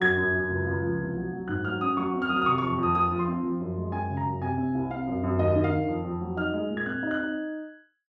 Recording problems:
none

